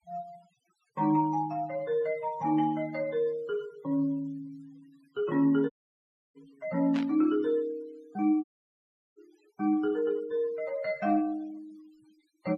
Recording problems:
denoising artefacts; signal-to-artefact ratio 27 dB
audio cutting out; at 5.5 s for 0.5 s and at 8.5 s for 0.5 s
static burst; at 7 s; peak -7 dB vs average level

